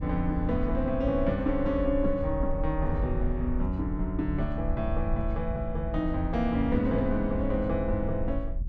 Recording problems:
wind on the microphone; below 70 Hz, SNR 5 dB

